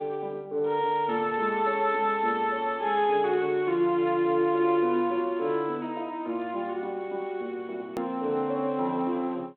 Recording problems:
phone line; 190 Hz to 3.7 kHz, G.726
hard cut with a click; at 8 s

